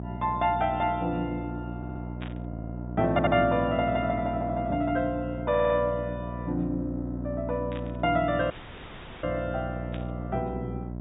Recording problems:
treble cut off; nothing above 4 kHz
hum; 60 Hz, harmonics up to 960 Hz, SNR 8 dB
audio stuttering; 4 times, first at 2 s
burst of static; at 2 s, at 7.5 s and at 10 s; peak -9 dB vs average level
dropout; at 8.5 s for 0.5 s

